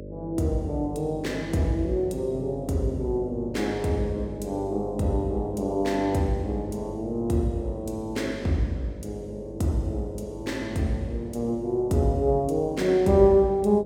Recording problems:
hum; 50 Hz, harmonics up to 600 Hz, SNR 13 dB

